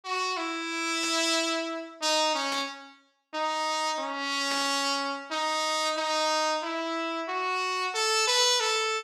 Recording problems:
burst of static; at 1 s, at 2.5 s and at 4.5 s; peak -5 dB vs average level

